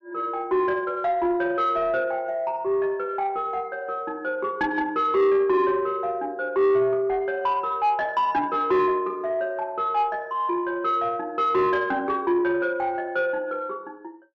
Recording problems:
distortion; soft clipping, signal-to-distortion ratio 11 dB

